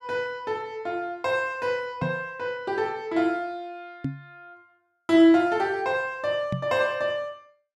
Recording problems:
microphone bump; at 2 s, at 4 s and at 6.5 s; peak 0 dB vs average level

